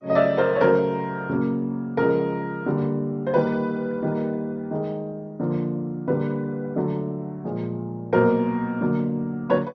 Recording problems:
codec artefacts; MP2, log-spectral distance 2 dB, nothing above 5.5 kHz

